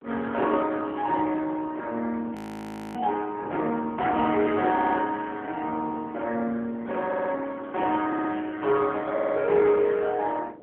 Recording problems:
phone line; 280 Hz to 3.3 kHz, AMR-NB
wind noise; below 550 Hz, SNR 20 dB
audio freezing; at 2.5 s for 0.5 s
audio stuttering; 4 times, first at 4.5 s

